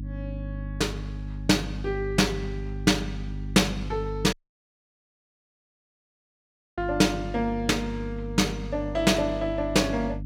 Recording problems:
hum; 50 Hz, harmonics up to 300 Hz, SNR 9 dB
dropout; at 4.5 s for 2.5 s

